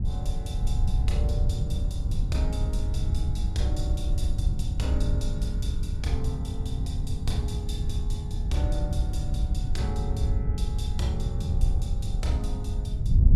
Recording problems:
wind noise; below 90 Hz, SNR -6 dB

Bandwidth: 15.5 kHz